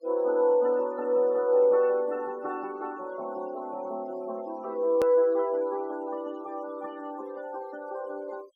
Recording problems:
denoising artefacts; signal-to-artefact ratio 24 dB
click at an edit; at 5 s

